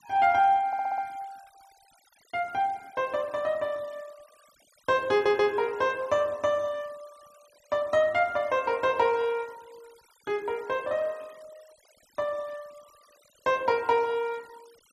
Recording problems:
denoising artefacts; signal-to-artefact ratio 28 dB
audio stuttering; at 0.5 s and at 5 s

